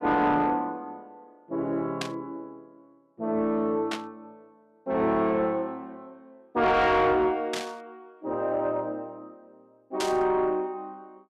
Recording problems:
distorted audio; soft clipping, signal-to-distortion ratio 11 dB
burst of static; 4 times, first at 2 s; peak 0 dB vs average level

